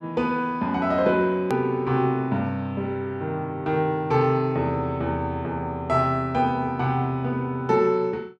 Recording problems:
click at an edit; at 1.5 s

